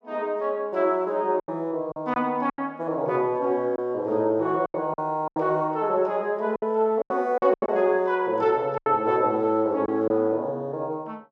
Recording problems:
packet loss; 8% of the sound replaced, filled with silence

